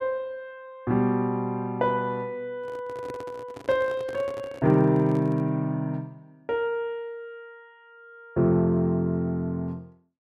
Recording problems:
handling noise; from 2.5 to 5.5 s; peak -9 dB vs average level

